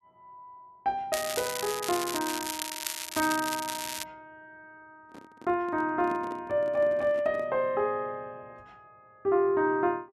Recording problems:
crackling; from 1 to 4 s; loose cable, SNR 5 dB
handling noise; from 5 to 7.5 s; peak -7 dB vs average level

